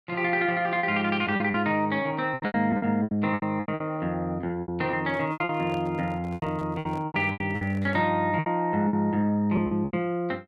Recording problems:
lost packets; 15% of the sound replaced, filled with repeated pitch periods
microphone handling noise; from 5 to 8 s; peak -11 dB vs average level

